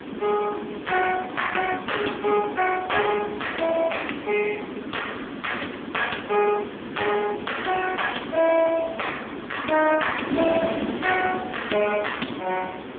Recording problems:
telephone audio; 190 Hz to 3.4 kHz, AMR-NB
wind noise; below 720 Hz, SNR 8 dB

